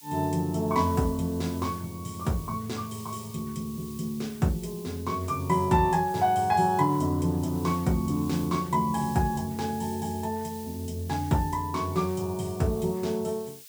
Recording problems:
background hiss; SNR 18 dB

